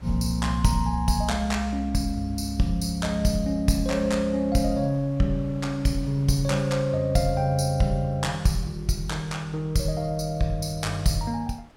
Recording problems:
wind on the microphone; below 1.3 kHz, SNR 26 dB

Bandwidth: 17 kHz